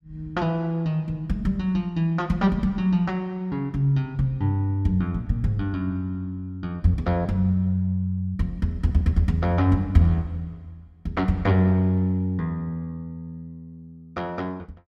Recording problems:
none

